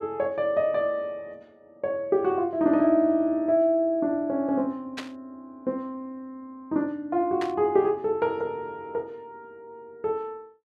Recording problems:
burst of static; at 5 s and at 7.5 s; peak -5 dB vs average level

